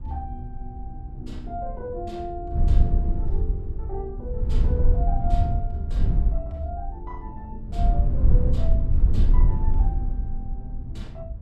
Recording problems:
wind on the microphone; below 68 Hz, SNR -11 dB

